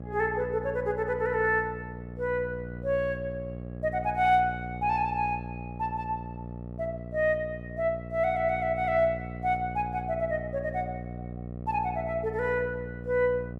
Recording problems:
hum; 60 Hz, harmonics up to 780 Hz, SNR 10 dB

